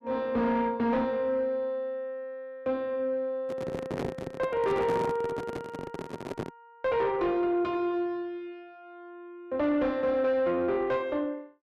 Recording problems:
distortion; soft clipping, signal-to-distortion ratio 11 dB
handling noise; from 3.5 to 6.5 s; peak 0 dB vs average level

